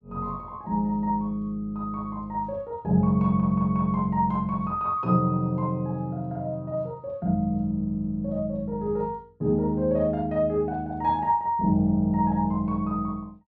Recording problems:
none

